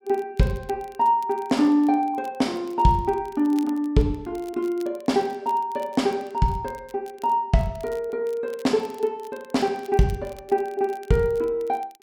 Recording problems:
crackle; vinyl, SNR 28 dB

